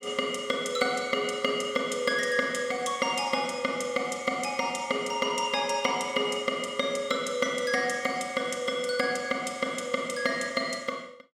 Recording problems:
none

